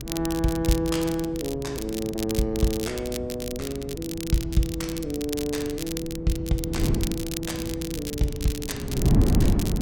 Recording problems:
hum; 60 Hz, harmonics up to 480 Hz, SNR 18 dB
wind on the microphone; below 240 Hz, SNR 3 dB
crackle; vinyl, SNR 8 dB

